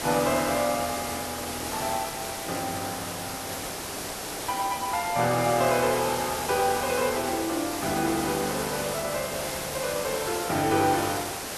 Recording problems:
hiss; slope -3 dB per octave, SNR 4 dB

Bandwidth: 12.5 kHz